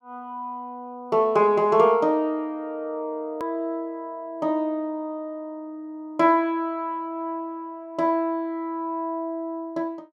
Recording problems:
click at an edit; at 3.5 s

